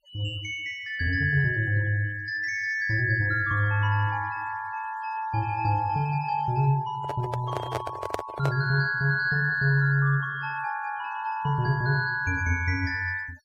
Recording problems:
noise reduction artefacts; signal-to-artefact ratio 24 dB
handling noise; from 7 to 8.5 s; peak +1 dB vs average level

